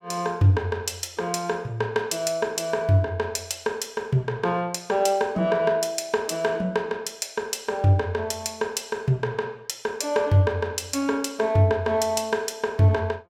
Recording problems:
none

